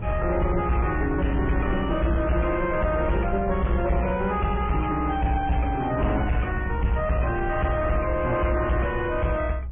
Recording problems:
treble missing; nothing above 3 kHz
lossy codec; MP3, log-spectral distance 3 dB
distortion; soft clipping, signal-to-distortion ratio 5 dB
low-frequency rumble; below 82 Hz, SNR 7 dB

